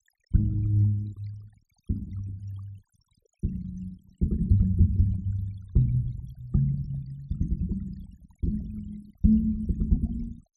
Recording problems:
denoising artefacts; signal-to-artefact ratio 24 dB

